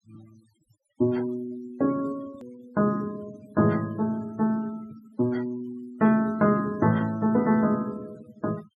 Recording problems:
denoising artefacts; signal-to-artefact ratio 24 dB
hard cut with a click; at 2.5 s

